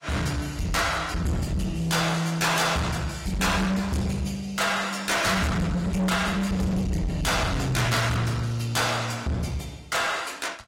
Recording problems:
lossy codec; AAC, log-spectral distance 4 dB, nothing above 16 kHz
distorted audio; soft clipping, signal-to-distortion ratio 7 dB

